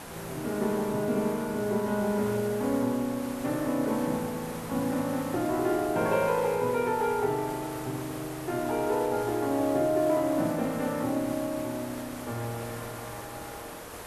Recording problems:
background hiss; SNR 12 dB

